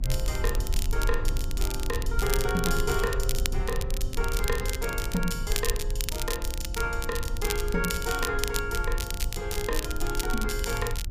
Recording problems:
low-frequency rumble; below 54 Hz, strongest tone 22 Hz, SNR 2 dB
crackling; vinyl, SNR 4 dB

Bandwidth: 15 kHz